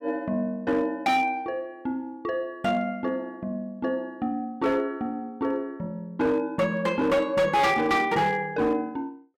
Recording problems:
distorted audio; hard clipping, signal-to-distortion ratio 10 dB

